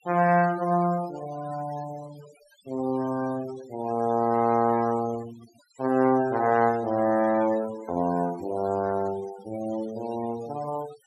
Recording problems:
denoising artefacts; signal-to-artefact ratio 18 dB

